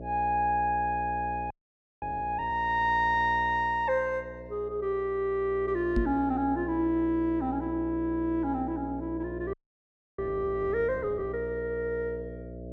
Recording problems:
hum; 60 Hz, harmonics up to 660 Hz, SNR 12 dB
audio freezing; at 1.5 s for 0.5 s and at 9.5 s for 0.5 s
microphone bump; at 6 s; peak +4 dB vs average level

